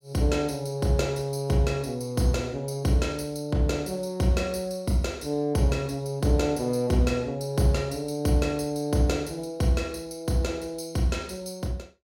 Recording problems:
none

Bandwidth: 16.5 kHz